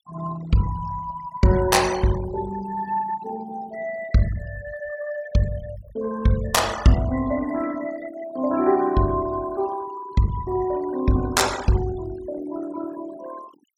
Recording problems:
denoising artefacts; signal-to-artefact ratio 16 dB

